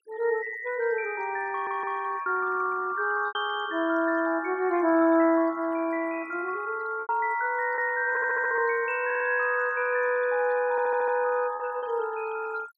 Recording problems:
noise reduction artefacts; signal-to-artefact ratio 18 dB
lost packets; 3% of the sound replaced, filled with repeated pitch periods
stutter; 4 times, first at 1.5 s

